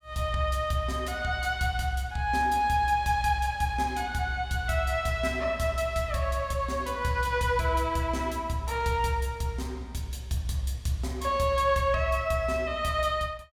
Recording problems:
none

